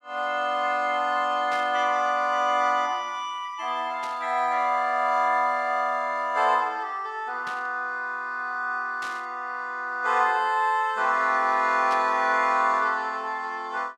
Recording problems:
burst of static; 5 times, first at 1.5 s; peak -10 dB vs average level

